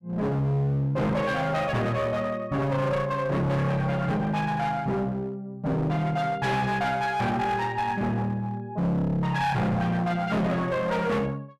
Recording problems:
distortion; hard clipping, uneven, signal-to-distortion ratio 6 dB

